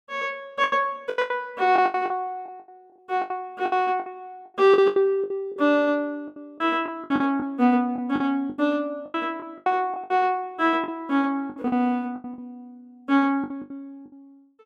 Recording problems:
packet loss; 15% of the sound replaced, filled with the last packet

